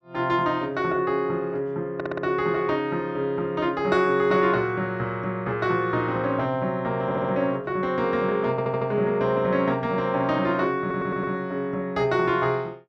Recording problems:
audio stuttering; 4 times, first at 2 s

